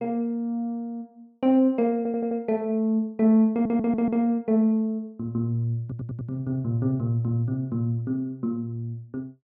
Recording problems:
stutter; at 2 s, at 3.5 s and at 6 s

